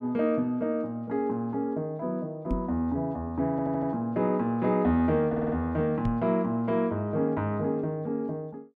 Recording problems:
microphone thump; at 2.5 s and at 6 s; peak +3 dB vs average level
audio stuttering; at 3.5 s and at 5.5 s

